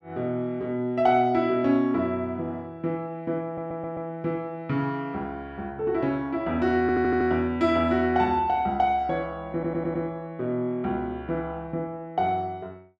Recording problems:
audio stuttering; at 3.5 s, at 7 s and at 9.5 s

